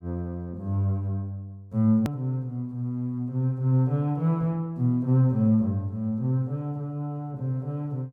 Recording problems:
hard cut with a click; at 2 s

